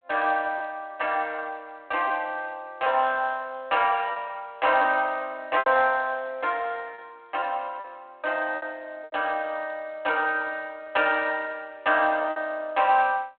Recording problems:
telephone audio; 280 Hz to 3.4 kHz, G.726
packet loss; 5% of the sound replaced, filled with repeated pitch periods

